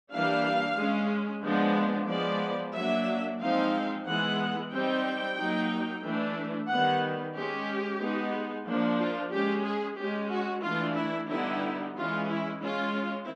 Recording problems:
none

